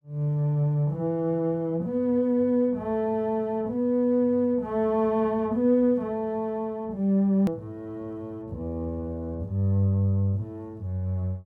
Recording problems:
edit click; at 7.5 s

